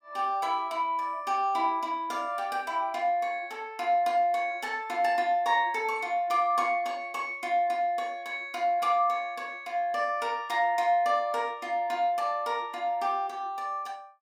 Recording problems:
none

